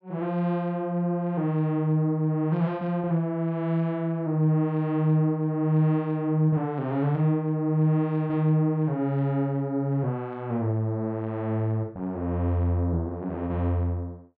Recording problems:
none

